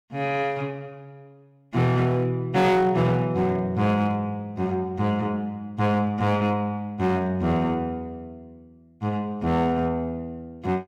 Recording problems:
distortion; hard clipping, uneven, signal-to-distortion ratio 11 dB

